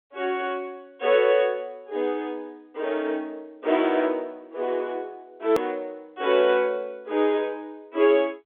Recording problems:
telephone audio; 280 Hz to 3.6 kHz, G.711
edit click; at 5.5 s

